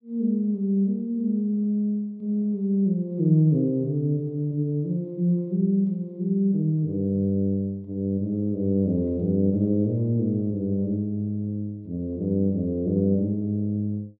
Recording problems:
none

